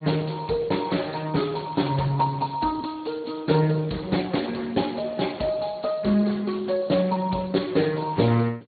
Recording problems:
low-pass filter; nothing above 4.3 kHz
codec artefacts; Speex, log-spectral distance 7 dB

